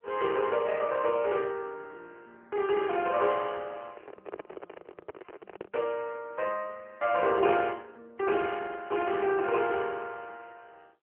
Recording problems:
phone line; 260 Hz to 2.9 kHz, AMR-NB
handling noise; from 4 to 6 s; peak -6 dB vs average level

